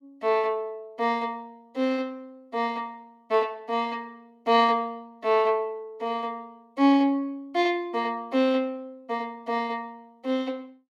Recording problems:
none

